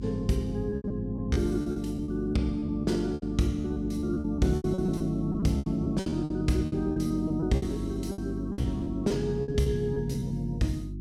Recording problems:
hum; 50 Hz, harmonics up to 350 Hz, SNR 9 dB
packet loss; 16% of the sound replaced, filled with repeated pitch periods

